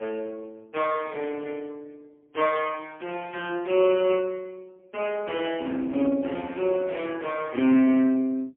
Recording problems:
telephone audio; 220 Hz to 3.4 kHz, AMR-NB, then MP3

